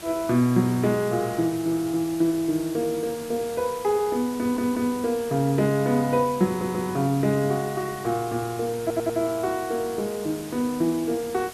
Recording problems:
hiss; slope -3 dB per octave, SNR 15 dB
stutter; at 4.5 s, at 6.5 s and at 9 s

